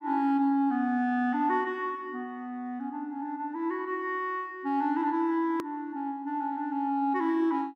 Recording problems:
hard cut with a click; at 5.5 s

